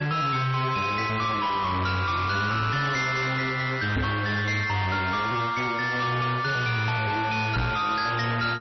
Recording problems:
codec artefacts; G.722, then MP3, log-spectral distance 4 dB, nothing above 5.8 kHz
distortion; soft clipping, signal-to-distortion ratio 7 dB
microphone thump; at 4 s and at 7.5 s; peak +3 dB vs average level

